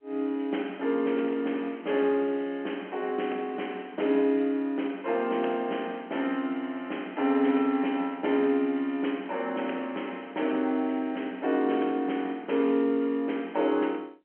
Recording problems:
telephone audio; 220 Hz to 3.2 kHz, G.711

